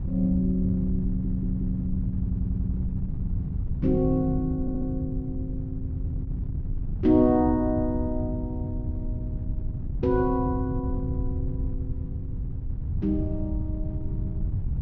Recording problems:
low-pass filter; nothing above 6.4 kHz
wind on the microphone; below 120 Hz, SNR 4 dB
audio stuttering; at 1 s, at 2 s and at 4.5 s

